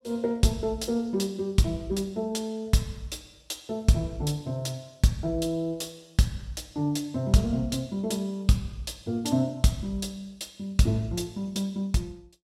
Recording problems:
none

